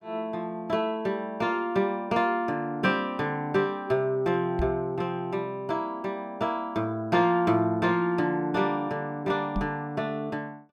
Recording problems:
microphone bump; at 4.5 s and at 9.5 s; peak +1 dB vs average level

